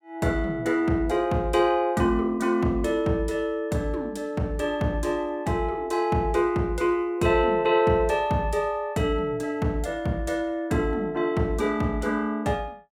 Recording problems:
none

